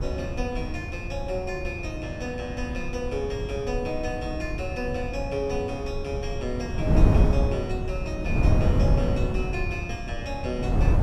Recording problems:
wind noise; below 150 Hz, SNR -3 dB

